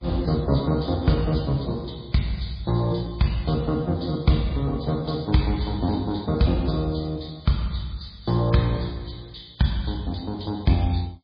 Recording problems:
lossy codec; MP2, then MP3, log-spectral distance 5 dB, nothing above 4.8 kHz

